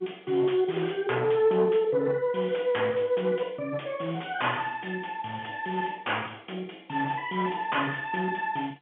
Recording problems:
telephone audio; 220 Hz to 3.4 kHz, G.711
distortion; soft clipping, signal-to-distortion ratio 11 dB

